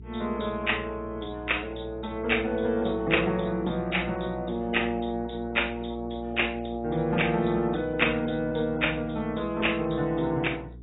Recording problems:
lossy compression; AAC, log-spectral distance 7 dB, nothing above 3.8 kHz
hum; 60 Hz, harmonics up to 420 Hz, SNR 16 dB

